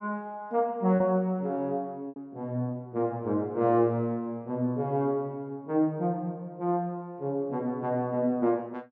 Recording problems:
lost packets; 1.4% of the sound replaced, filled with repeated pitch periods

